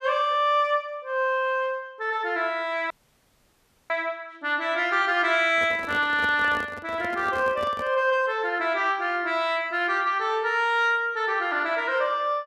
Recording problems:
audio cutting out; at 3 s for 1 s
microphone handling noise; from 5.5 to 8 s; peak -7 dB vs average level

